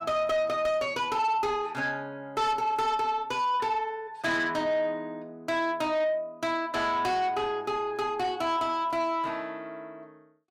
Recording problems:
distorted audio; soft clipping, signal-to-distortion ratio 11 dB

